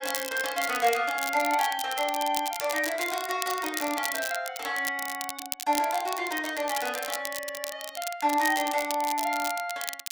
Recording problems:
crackle; vinyl, SNR 7 dB

